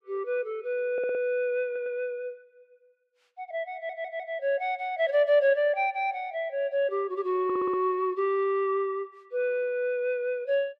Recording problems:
audio stuttering; 4 times, first at 1 s

